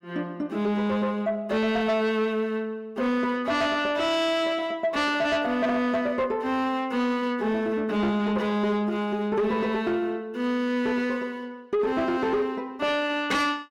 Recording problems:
distortion; soft clipping, signal-to-distortion ratio 11 dB

